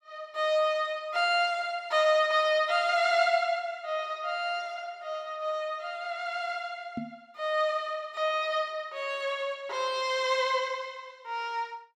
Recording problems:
microphone thump; at 7 s; peak -3 dB vs average level

